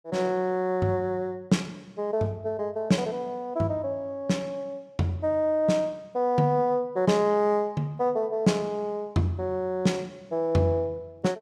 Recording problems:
none

